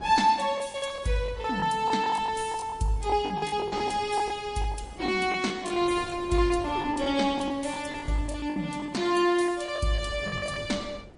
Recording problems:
lossy codec; MP3, log-spectral distance 3 dB, nothing above 10.4 kHz
wind noise; below 500 Hz, SNR 19 dB
packet loss; 13% of the sound replaced, filled with the last packet

